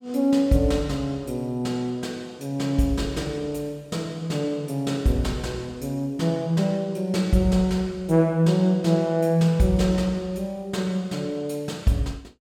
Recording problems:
none

